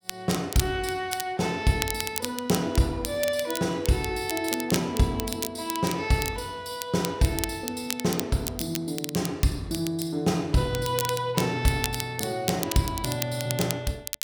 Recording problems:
crackling; vinyl, SNR 7 dB

